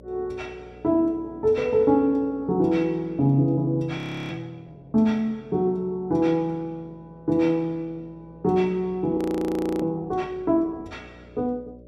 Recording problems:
electrical hum; 60 Hz, harmonics up to 600 Hz, SNR 26 dB
audio freezing; at 4 s and at 9 s for 0.5 s

